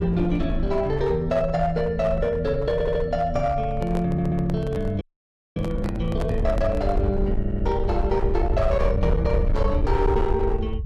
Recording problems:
distortion; hard clipping, uneven, signal-to-distortion ratio 11 dB
rumble; below 76 Hz, SNR 4 dB
audio stuttering; at 2.5 s, at 4 s and at 7.5 s
microphone handling noise; from 3.5 to 7 s; peak -4 dB vs average level
frozen audio; at 5 s for 0.5 s

